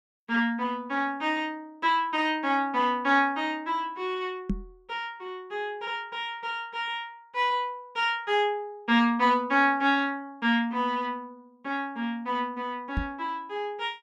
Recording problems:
microphone bump; at 4.5 s and at 13 s; peak +3 dB vs average level

